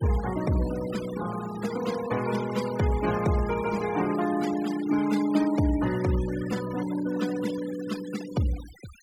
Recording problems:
denoising artefacts; signal-to-artefact ratio 13 dB

